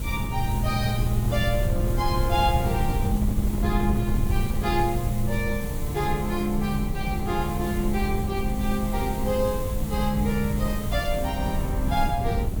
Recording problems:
hiss; slope 0 dB per octave, SNR 13 dB
wind on the microphone; below 110 Hz, SNR 2 dB

